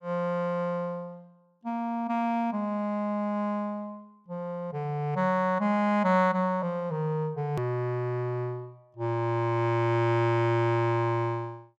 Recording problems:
click at an edit; at 7.5 s

